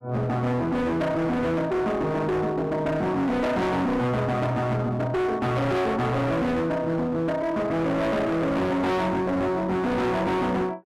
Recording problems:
distortion; hard clipping, uneven, signal-to-distortion ratio 5 dB

